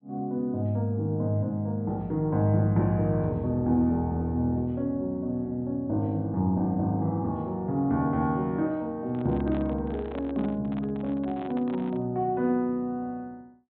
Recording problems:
low-pass filter; nothing above 4 kHz
microphone handling noise; from 9 to 12 s; peak -8 dB vs average level

